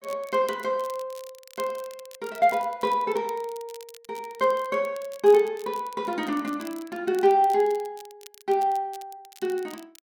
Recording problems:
crackle; vinyl, SNR 23 dB

